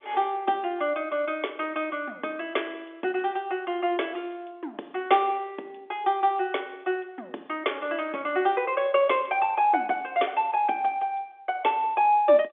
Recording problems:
telephone audio; 260 Hz to 3.5 kHz, G.711

